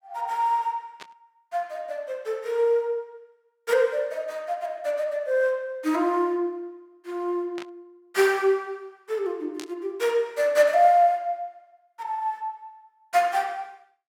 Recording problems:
static burst; at 1 s, at 7.5 s and at 9.5 s; peak -9 dB vs average level

